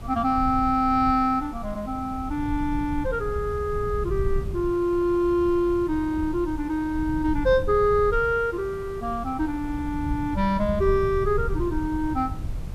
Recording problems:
background hiss; slope -6 dB per octave, SNR 23 dB
rumble; below 98 Hz, SNR 10 dB

